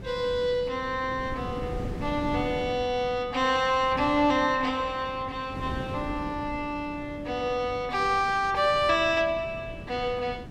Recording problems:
wind on the microphone; below 310 Hz, SNR 13 dB

